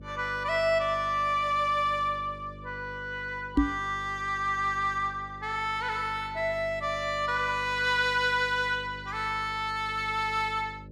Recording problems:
hum; 50 Hz, harmonics up to 600 Hz, SNR 18 dB
microphone thump; at 3.5 s; peak +9 dB vs average level

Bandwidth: 14.5 kHz